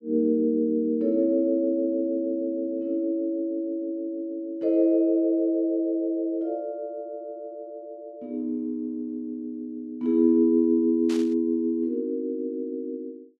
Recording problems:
burst of static; at 11 s; peak -10 dB vs average level

